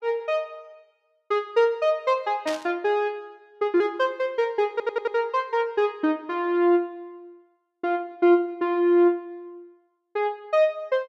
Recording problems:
burst of static; at 2.5 s; peak -6 dB vs average level
audio stuttering; at 4.5 s

